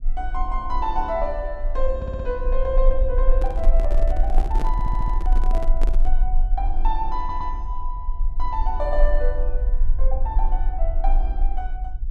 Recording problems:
rumble; below 36 Hz, strongest tone 20 Hz, SNR -4 dB
stutter; at 2 s, at 4.5 s and at 7 s
microphone handling noise; from 3.5 to 6 s; peak +1 dB vs average level

